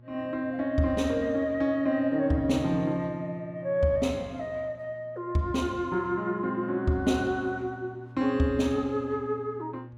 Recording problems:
hum; 60 Hz, harmonics up to 840 Hz, SNR 20 dB

